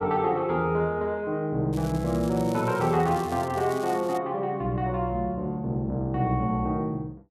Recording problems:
crackle; from 1.5 to 4 s; loose cable, SNR 19 dB

